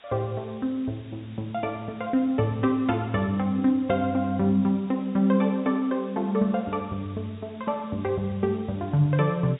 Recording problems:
treble cut off; nothing above 4 kHz
hiss; SNR 27 dB

